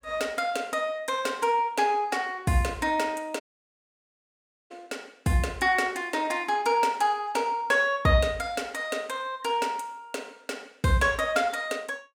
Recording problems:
audio cutting out; at 3.5 s for 1.5 s

